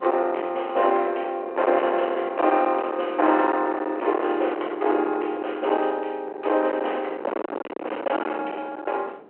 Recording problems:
telephone audio; 320 Hz to 3.1 kHz, G.726
distorted audio; hard clipping, uneven, signal-to-distortion ratio 9 dB
wind on the microphone; below 1 kHz, SNR 10 dB

